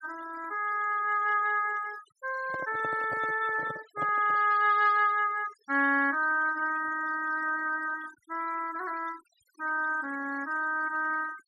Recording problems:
denoising artefacts; signal-to-artefact ratio 21 dB
microphone handling noise; from 2.5 to 4.5 s; peak -7 dB vs average level

